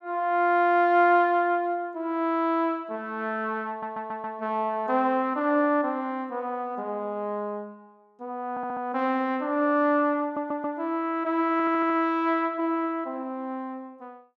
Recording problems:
stutter; 4 times, first at 3.5 s

